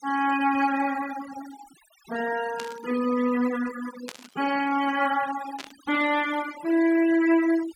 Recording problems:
denoising artefacts; signal-to-artefact ratio 14 dB
burst of static; at 2.5 s, at 4 s and at 5.5 s; peak -8 dB vs average level

